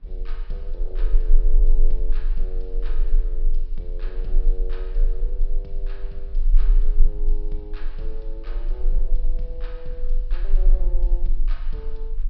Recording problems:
treble cut off; nothing above 5.5 kHz
low-frequency rumble; below 30 Hz, strongest tone 20 Hz, SNR -15 dB
wind noise; below 360 Hz, SNR 16 dB

